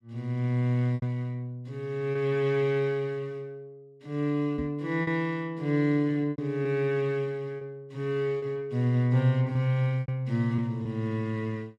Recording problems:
lost packets; 5% of the sound replaced, filled with repeated pitch periods
microphone thump; at 4.5 s; peak -3 dB vs average level

